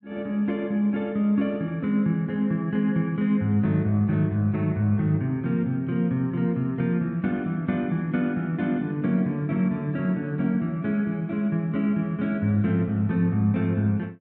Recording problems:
none

